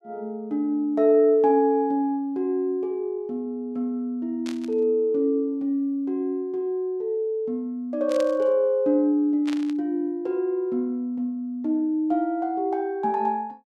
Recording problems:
burst of static; at 4.5 s, at 8 s and at 9.5 s; peak -9 dB vs average level

